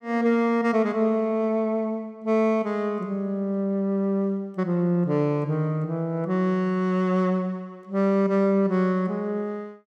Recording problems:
none

